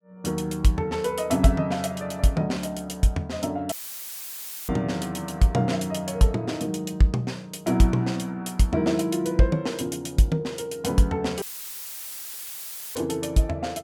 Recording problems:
audio cutting out; at 3.5 s for 1 s and at 11 s for 1.5 s; filled with static

